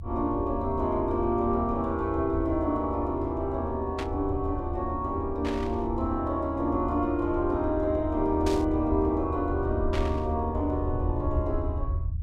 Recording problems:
rumble; below 82 Hz, SNR 6 dB
static burst; 4 times, first at 4 s; peak -5 dB vs average level

